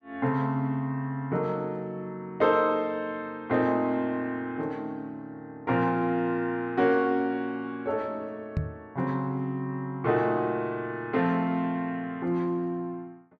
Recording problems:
knock on the microphone; at 8.5 s; peak +3 dB vs average level

